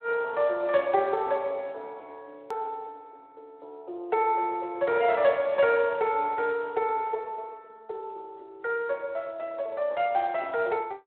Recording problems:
telephone audio; 340 Hz to 4 kHz, Speex
click at an edit; at 2.5 s

